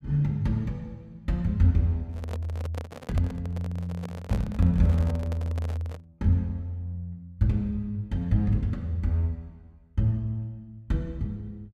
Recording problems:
microphone handling noise; from 2 to 6 s; peak -4 dB vs average level

